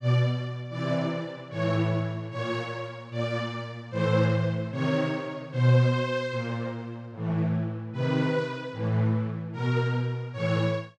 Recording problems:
none

